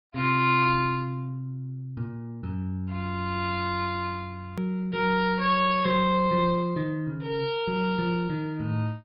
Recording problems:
low-pass filter; nothing above 4.9 kHz
lossy compression; Opus, log-spectral distance 2 dB
hard cut with a click; at 4.5 s

